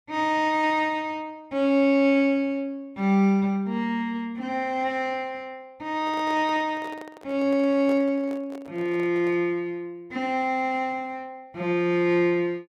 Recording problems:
microphone handling noise; from 6 to 9.5 s; peak -11 dB vs average level

